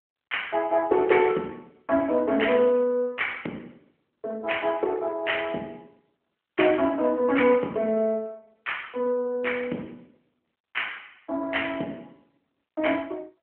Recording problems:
telephone audio; 220 Hz to 3.1 kHz, AMR-NB

